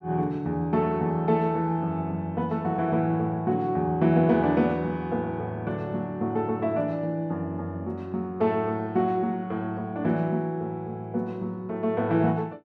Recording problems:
none

